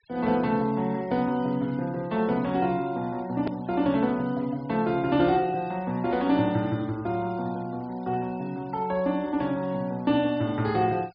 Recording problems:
treble cut off; nothing above 5.5 kHz
noise reduction artefacts; signal-to-artefact ratio 27 dB
edit click; at 3.5 s

